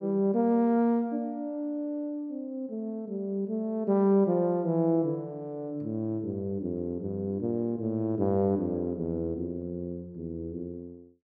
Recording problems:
none

